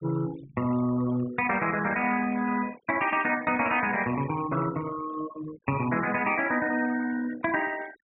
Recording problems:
treble missing; nothing above 4 kHz
denoising artefacts; signal-to-artefact ratio 15 dB

